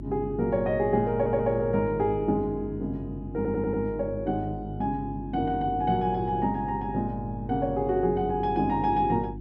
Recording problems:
hum; 50 Hz, harmonics up to 350 Hz, SNR 11 dB
stutter; at 1 s and at 3.5 s

